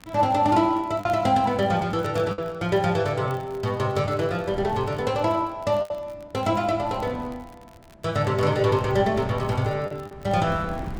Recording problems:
wind noise; below 300 Hz, SNR 19 dB
crackling; vinyl, SNR 30 dB
packet loss; 3% of the sound replaced, filled with the last packet

